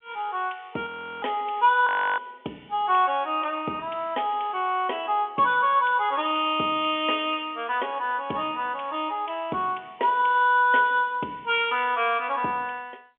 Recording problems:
telephone audio; 220 Hz to 3.4 kHz, G.711
audio freezing; at 1 s and at 2 s

